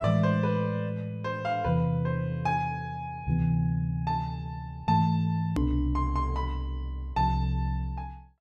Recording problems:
click at an edit; at 5.5 s

